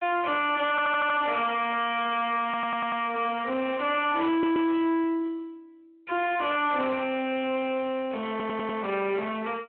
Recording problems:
phone line; 300 Hz to 3.2 kHz, Speex
distorted audio; soft clipping, signal-to-distortion ratio 6 dB
audio stuttering; 4 times, first at 0.5 s

